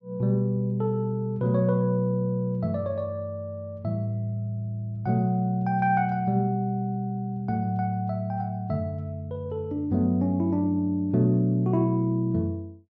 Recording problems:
none

